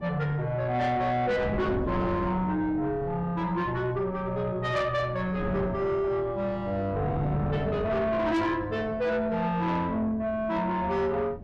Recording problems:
distorted audio; soft clipping, signal-to-distortion ratio 10 dB
wind noise; below 330 Hz, SNR 10 dB

